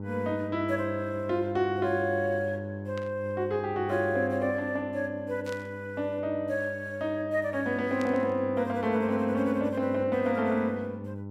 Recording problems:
electrical hum; 50 Hz, harmonics up to 1 kHz, SNR 11 dB
static burst; at 3 s, at 5.5 s and at 8 s; peak -11 dB vs average level

